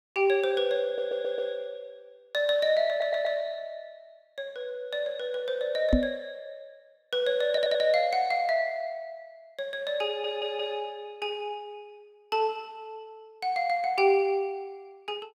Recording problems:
stutter; 4 times, first at 1 s
microphone thump; at 6 s; peak +8 dB vs average level

